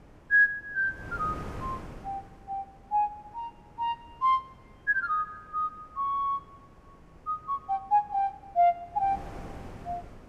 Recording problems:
wind on the microphone; below 600 Hz, SNR 19 dB

